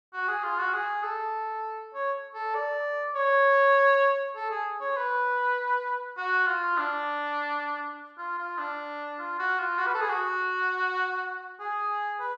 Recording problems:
none

